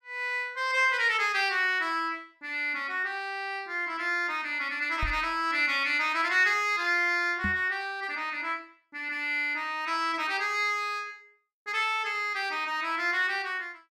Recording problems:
knock on the microphone; at 5 s and at 7.5 s; peak -2 dB vs average level

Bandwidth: 14 kHz